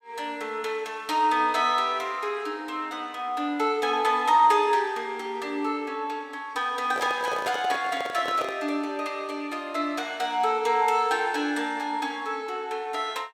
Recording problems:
microphone handling noise; from 7 to 8.5 s; peak -2 dB vs average level

